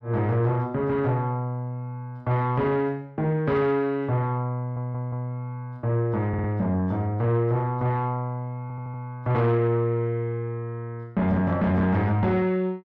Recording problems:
distorted audio; soft clipping, signal-to-distortion ratio 11 dB
stutter; at 4.5 s, at 6.5 s and at 8.5 s

